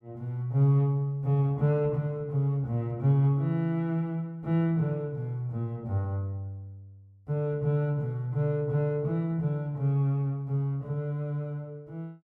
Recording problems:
none

